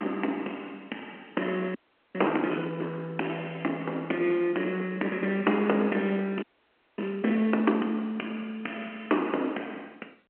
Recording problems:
telephone audio; 240 Hz to 3.1 kHz, G.711
distortion; soft clipping, signal-to-distortion ratio 16 dB
frozen audio; at 2 s and at 6.5 s for 0.5 s

